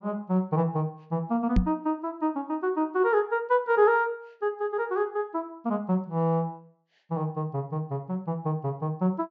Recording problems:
treble missing; nothing above 7.6 kHz
microphone bump; at 1.5 s; peak +7 dB vs average level

